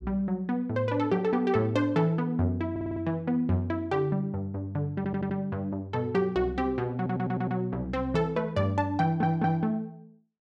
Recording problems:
stutter; 4 times, first at 2.5 s

